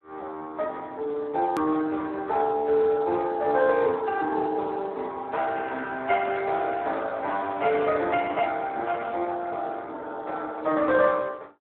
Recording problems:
telephone audio; 280 Hz to 2.8 kHz, Speex
edit click; at 1.5 s

